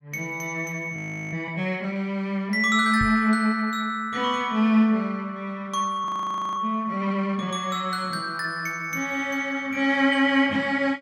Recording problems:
frozen audio; at 1 s and at 6 s for 0.5 s
microphone bump; at 3 s; peak -2 dB vs average level

